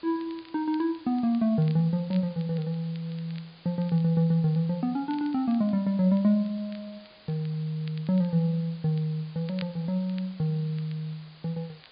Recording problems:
treble cut off; nothing above 4.9 kHz
hiss; SNR 25 dB
crackling; vinyl, SNR 27 dB

